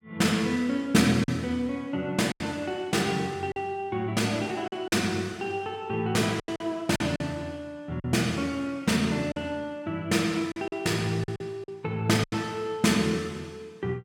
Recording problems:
lost packets; 6% of the sound replaced, filled with silence

